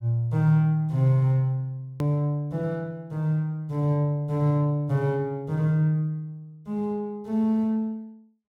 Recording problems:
hard cut with a click; at 2 s

